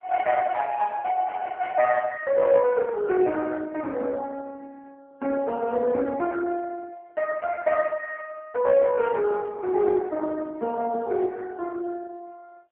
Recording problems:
telephone audio; 300 Hz to 2.8 kHz, AMR-NB

